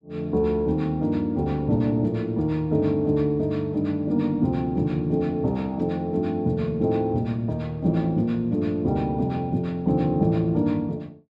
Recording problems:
none

